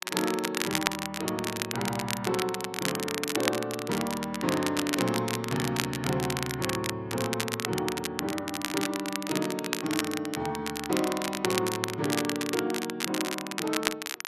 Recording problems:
crackling; vinyl, SNR 2 dB

